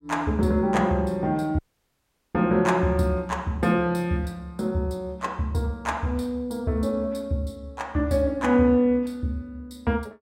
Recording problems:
dropout; at 1.5 s for 0.5 s

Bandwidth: 16 kHz